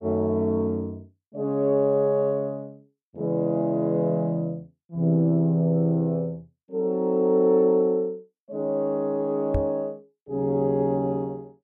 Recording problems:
microphone bump; at 9.5 s; peak +1 dB vs average level

